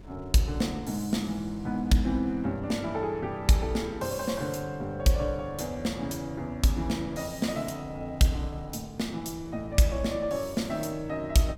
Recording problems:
wind on the microphone; below 180 Hz, SNR 19 dB

